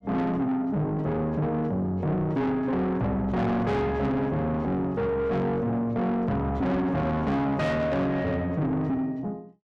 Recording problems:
distortion; soft clipping, signal-to-distortion ratio 8 dB

